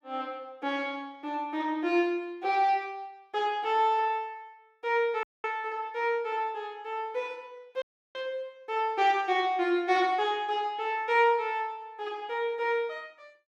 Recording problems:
dropout; at 5 s and at 8 s

